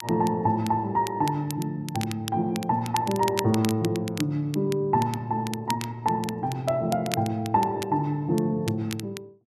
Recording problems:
crackling; vinyl, SNR 13 dB

